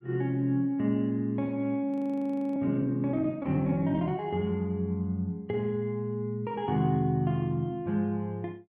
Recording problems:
frozen audio; at 2 s for 0.5 s

